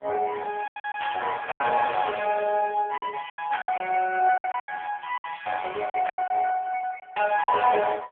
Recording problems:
telephone audio; 300 Hz to 3.3 kHz, AMR-NB
packet loss; 10% of the sound replaced, filled with silence
static burst; at 1 s, at 3.5 s and at 6 s; peak -4 dB vs average level

